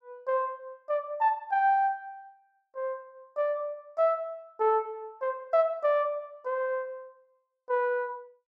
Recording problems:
none

